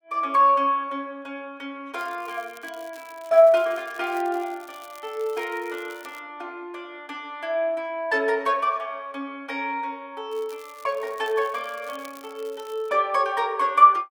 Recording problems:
crackle; from 2 to 6 s and from 10 to 13 s; loose cable, SNR 26 dB

